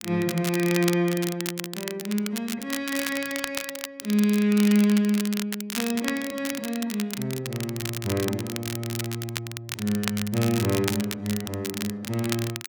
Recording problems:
crackling; vinyl, SNR 7 dB

